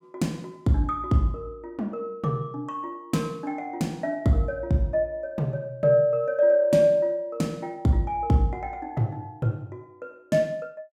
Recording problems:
none

